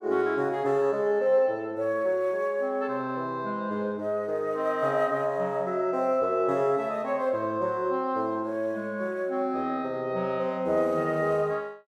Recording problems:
none

